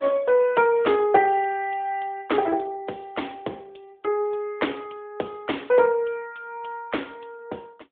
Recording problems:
telephone audio; 280 Hz to 3.4 kHz, AMR-NB

